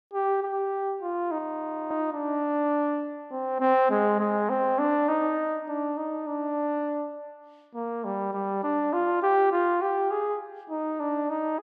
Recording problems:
audio freezing; at 1.5 s for 0.5 s

